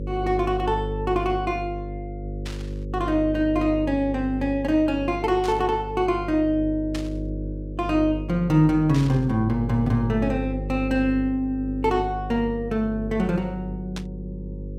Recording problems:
hum; 50 Hz, harmonics up to 550 Hz, SNR 9 dB
static burst; 5 times, first at 2.5 s; peak -7 dB vs average level

